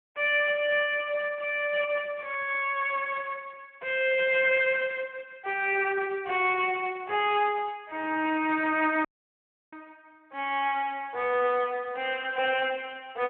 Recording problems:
phone line; 340 Hz to 3.2 kHz, Speex
audio cutting out; at 9 s for 0.5 s

